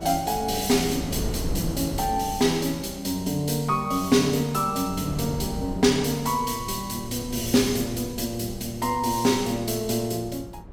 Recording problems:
wind on the microphone; below 260 Hz, SNR 12 dB

